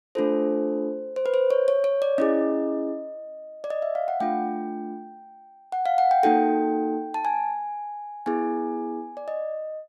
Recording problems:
none

